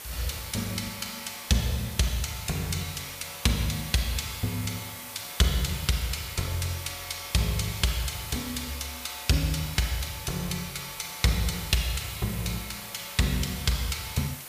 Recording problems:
hiss; slope -1 dB per octave, SNR 10 dB

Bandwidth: 15 kHz